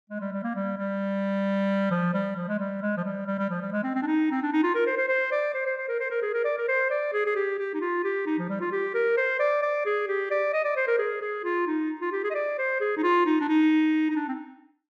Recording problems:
none

